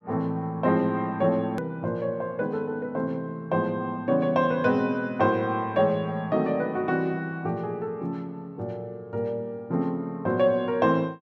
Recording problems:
edit click; at 1.5 s

